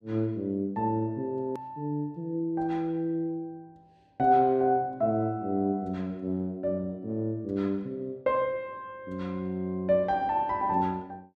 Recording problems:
hard cut with a click; at 1.5 s

